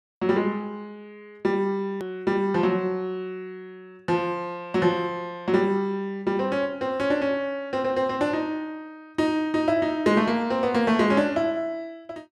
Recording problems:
hard cut with a click; at 2 s

